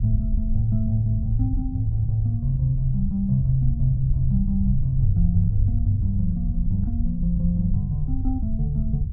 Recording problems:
rumble; below 86 Hz, SNR 3 dB

